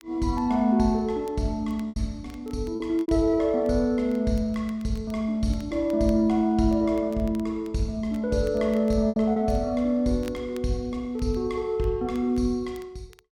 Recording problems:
crackling; vinyl, SNR 30 dB
lost packets; 2% of the sound replaced, filled with repeated pitch periods

